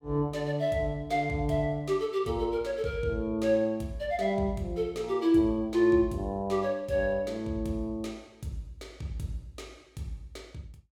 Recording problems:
none

